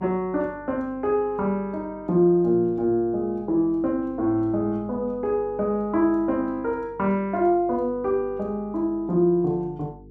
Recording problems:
electrical hum; 50 Hz, harmonics up to 450 Hz, SNR 24 dB

